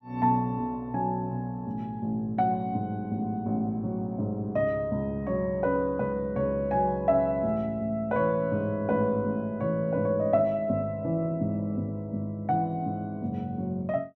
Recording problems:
none

